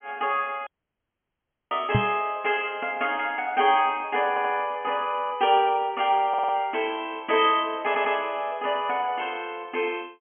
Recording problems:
treble cut off; nothing above 3.3 kHz
dropout; at 0.5 s for 1 s
microphone thump; at 2 s; peak +5 dB vs average level
stutter; at 4.5 s, at 6.5 s and at 8 s

